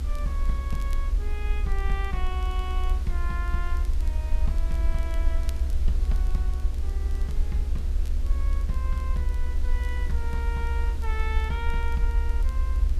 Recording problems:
hum; 60 Hz, harmonics up to 1.3 kHz, SNR 12 dB
background hiss; slope -4 dB per octave, SNR 10 dB
rumble; below 66 Hz, SNR -9 dB
crackle; vinyl, SNR 20 dB

